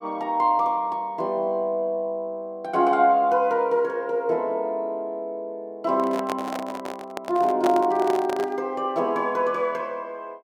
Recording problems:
microphone handling noise; from 6 to 8.5 s; peak 0 dB vs average level

